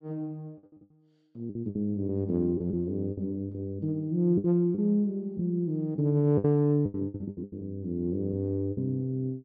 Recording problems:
packet loss; 10% of the sound replaced, filled with the last packet

